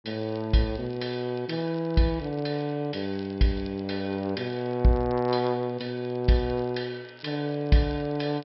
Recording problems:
treble cut off; nothing above 5.5 kHz
crackle; vinyl, SNR 27 dB

